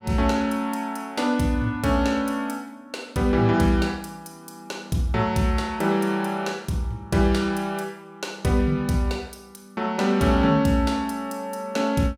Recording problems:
none

